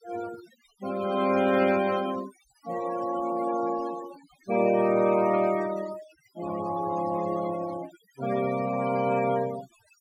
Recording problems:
denoising artefacts; signal-to-artefact ratio 14 dB

